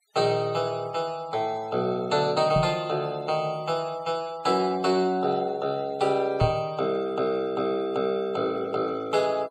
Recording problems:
noise reduction artefacts; signal-to-artefact ratio 24 dB
knock on the microphone; at 2.5 s and at 6.5 s; peak +5 dB vs average level

